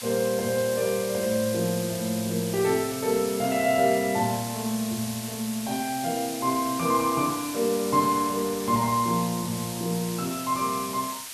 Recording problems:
hiss; slope +3 dB per octave, SNR 9 dB

